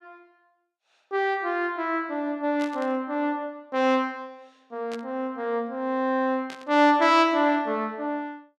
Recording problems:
burst of static; at 2.5 s, at 5 s and at 6.5 s; peak -11 dB vs average level

